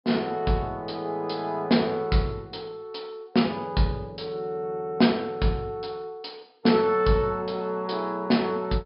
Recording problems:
low-pass filter; nothing above 5.5 kHz

